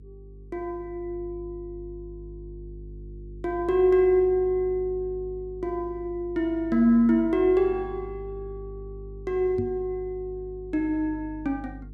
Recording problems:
electrical hum; 50 Hz, harmonics up to 450 Hz, SNR 17 dB
microphone bump; at 9.5 s; peak -2 dB vs average level

